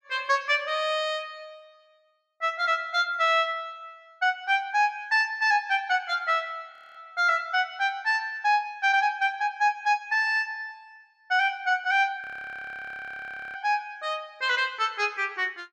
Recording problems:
audio freezing; at 6.5 s and at 12 s for 1.5 s

